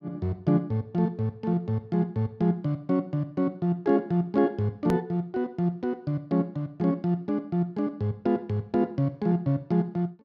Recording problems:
edit click; at 5 s

